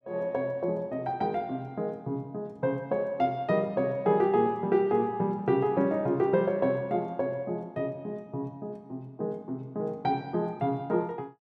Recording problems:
none

